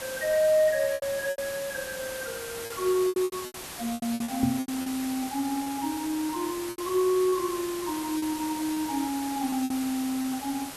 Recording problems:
background hiss; slope -2 dB per octave, SNR 9 dB
lost packets; 10% of the sound replaced, filled with repeated pitch periods
microphone bump; at 4.5 s; peak +6 dB vs average level

